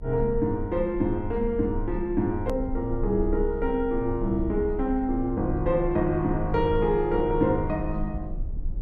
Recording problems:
low-frequency rumble; below 48 Hz, strongest tone 30 Hz, SNR 10 dB
hard cut with a click; at 2.5 s

